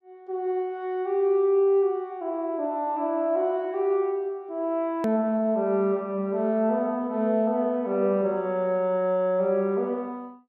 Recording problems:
click at an edit; at 5 s

